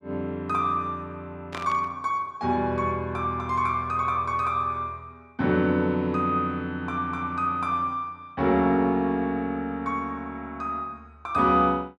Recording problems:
static burst; at 1.5 s; peak -6 dB vs average level

